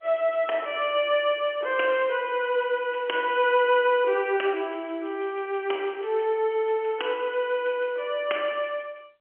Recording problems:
phone line; 280 Hz to 3.2 kHz, G.711

